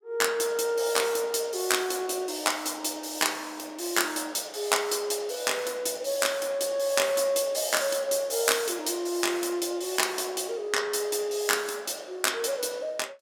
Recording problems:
none

